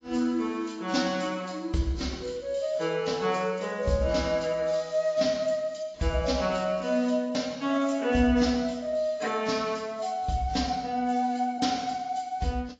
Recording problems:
lossy codec; AAC, log-spectral distance 4 dB, nothing above 7.3 kHz

